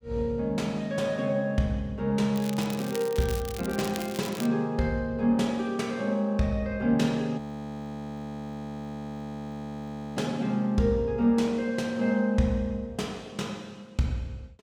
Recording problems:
crackling; from 2.5 to 4.5 s; loose cable, SNR 12 dB
frozen audio; at 7.5 s for 3 s

